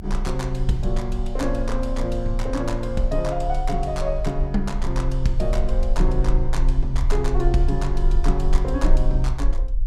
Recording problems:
low-frequency rumble; below 42 Hz, strongest tone 28 Hz, SNR 0 dB

